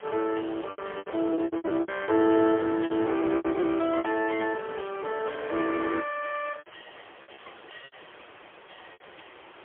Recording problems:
telephone audio; 280 Hz to 3.3 kHz, AMR-NB, then MP3
background hiss; SNR 22 dB
lost packets; 13% of the sound replaced, filled with repeated pitch periods

